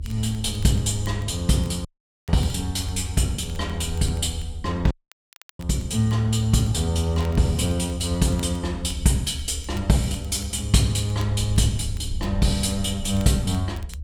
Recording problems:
rumble; below 76 Hz, SNR 10 dB
crackling; vinyl, SNR 27 dB
dropout; at 2 s and at 5 s for 0.5 s

